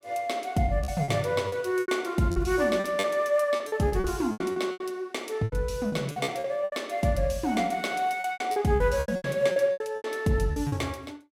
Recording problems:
lost packets; 15% of the sound replaced, filled with repeated pitch periods

